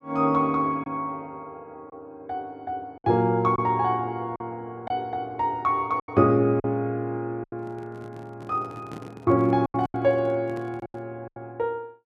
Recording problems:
lost packets; 6% of the sound replaced, filled with silence
handling noise; from 7.5 to 11 s; peak -9 dB vs average level

